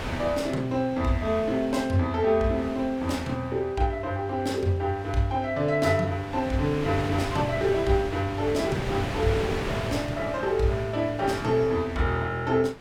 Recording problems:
wind noise; below 1.7 kHz, SNR 10 dB

